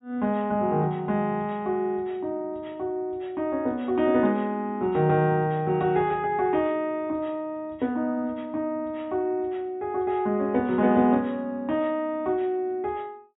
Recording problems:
low-pass filter; nothing above 4 kHz

